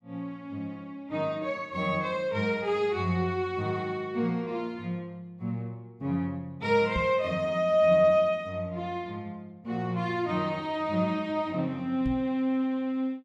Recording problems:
microphone bump; at 7 s and at 12 s; peak -1 dB vs average level

